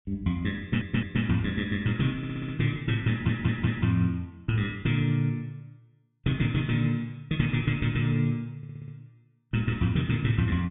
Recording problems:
treble cut off; nothing above 3.7 kHz
audio stuttering; 4 times, first at 0.5 s

